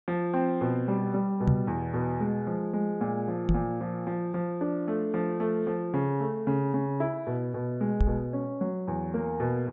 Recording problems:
treble missing; nothing above 8 kHz
microphone bump; at 1.5 s, at 3.5 s and at 8 s; peak +9 dB vs average level

